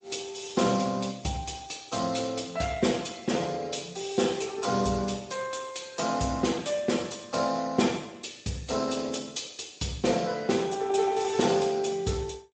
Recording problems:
codec artefacts; Speex, then MP3, log-spectral distance 7 dB, nothing above 7.8 kHz

